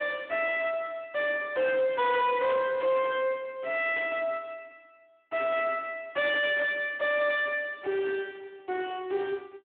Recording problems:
phone line; 280 Hz to 3.6 kHz, Speex
distorted audio; soft clipping, signal-to-distortion ratio 5 dB
burst of static; at 2.5 s, at 4 s and at 6.5 s; peak -10 dB vs average level

